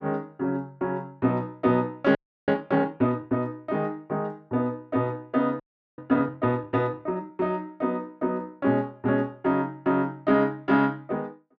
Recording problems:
audio freezing; at 2 s and at 5.5 s

